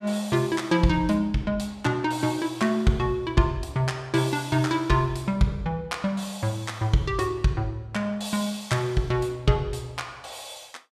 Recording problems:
none

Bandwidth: 14.5 kHz